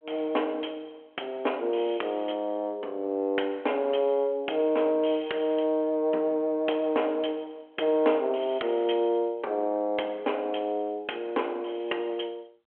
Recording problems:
telephone audio; 280 Hz to 3.3 kHz, G.726

